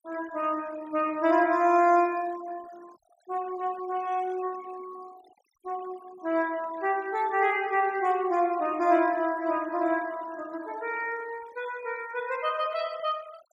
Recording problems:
denoising artefacts; signal-to-artefact ratio 22 dB

